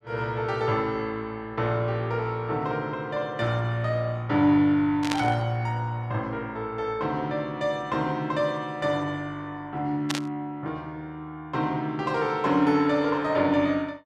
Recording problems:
burst of static; at 5 s and at 10 s; peak +2 dB vs average level

